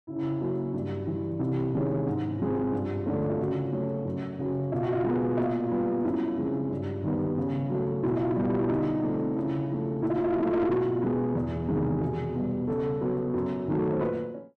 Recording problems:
distortion; soft clipping, signal-to-distortion ratio 12 dB

